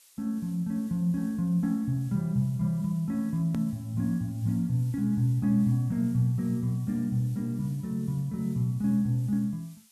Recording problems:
background hiss; slope +3 dB per octave, SNR 27 dB
edit click; at 3.5 s

